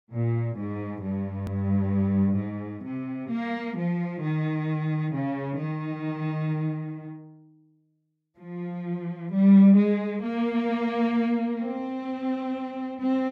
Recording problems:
hard cut with a click; at 1.5 s

